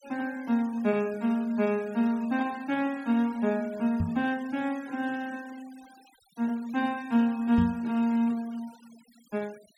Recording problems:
noise reduction artefacts; signal-to-artefact ratio 23 dB
microphone thump; at 4 s and at 7.5 s; peak +3 dB vs average level

